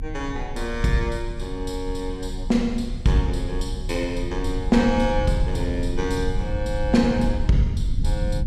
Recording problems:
rumble; below 84 Hz, strongest tone 28 Hz, SNR 5 dB

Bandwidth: 14.5 kHz